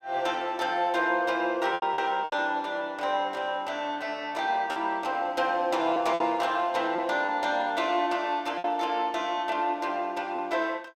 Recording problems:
packet loss; 4% of the sound replaced, filled with repeated pitch periods

